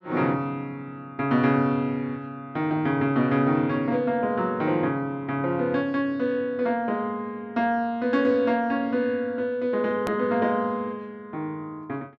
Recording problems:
click at an edit; at 10 s

